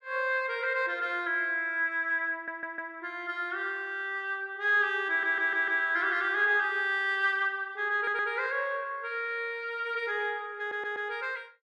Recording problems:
audio stuttering; 4 times, first at 2.5 s

